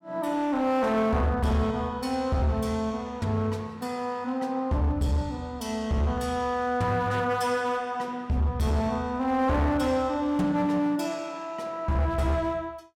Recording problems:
distortion; hard clipping, signal-to-distortion ratio 12 dB

